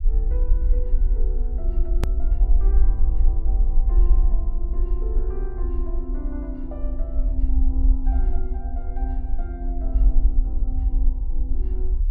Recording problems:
rumble; below 48 Hz, SNR -14 dB
hard cut with a click; at 2 s

